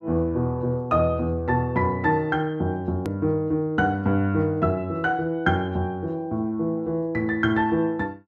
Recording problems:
click at an edit; at 3 s

